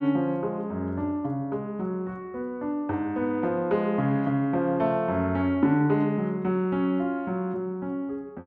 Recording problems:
none

